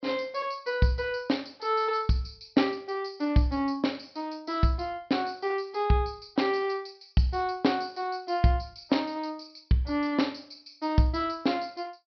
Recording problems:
low-pass filter; nothing above 5.5 kHz

